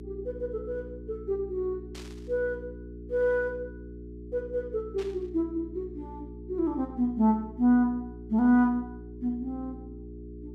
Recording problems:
electrical hum; 60 Hz, harmonics up to 420 Hz, SNR 14 dB
burst of static; at 2 s and at 5 s; peak -13 dB vs average level

